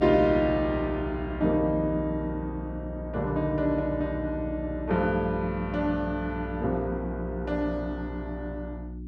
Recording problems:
electrical hum; 60 Hz, harmonics up to 360 Hz, SNR 8 dB

